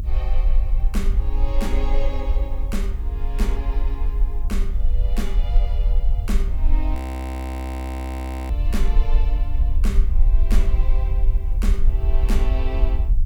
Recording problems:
electrical hum; 50 Hz, harmonics up to 350 Hz, SNR 21 dB
background hiss; slope +4 dB per octave, SNR 27 dB
low-frequency rumble; below 48 Hz, strongest tone 22 Hz, SNR -10 dB
audio freezing; at 7 s for 1.5 s

